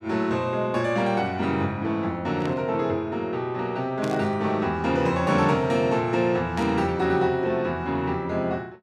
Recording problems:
burst of static; at 2.5 s, at 4 s and at 6.5 s; peak -9 dB vs average level

